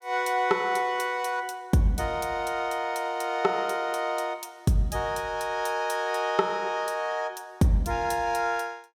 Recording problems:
none

